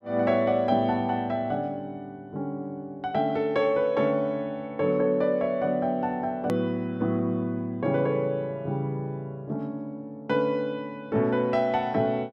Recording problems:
edit click; at 6.5 s

